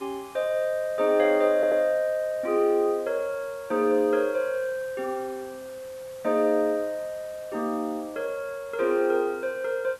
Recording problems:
hiss; slope -2 dB per octave, SNR 24 dB
stutter; at 1.5 s

